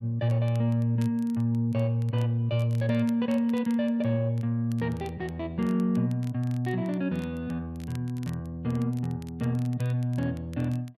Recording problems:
crackling; vinyl, SNR 27 dB

